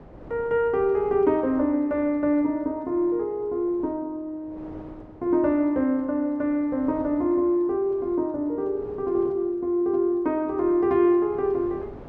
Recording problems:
wind on the microphone; below 580 Hz, SNR 23 dB

